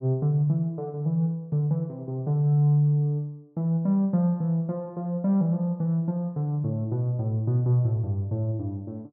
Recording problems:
none

